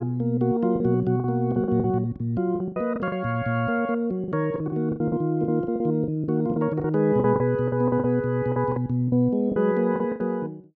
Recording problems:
lost packets; 14% of the sound replaced, filled with the last packet

